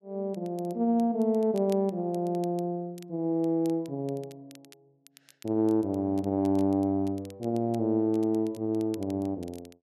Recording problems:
crackling; vinyl, SNR 27 dB

